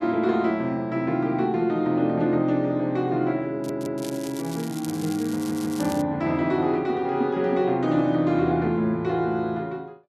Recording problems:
audio stuttering; at 3.5 s and at 5.5 s
crackle; from 3.5 to 6 s; loose cable, SNR 16 dB

